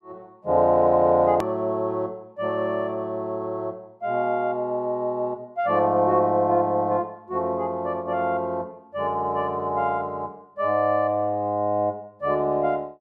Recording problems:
click at an edit; at 1.5 s

